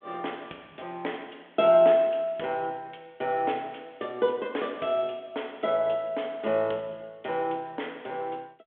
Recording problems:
phone line; 240 Hz to 3.5 kHz, G.726

